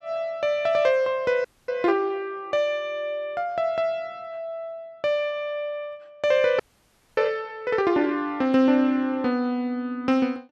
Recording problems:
audio freezing; at 1.5 s and at 6.5 s for 0.5 s

